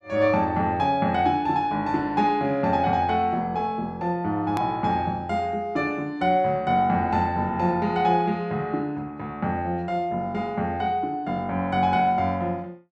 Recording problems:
hard cut with a click; at 4.5 s

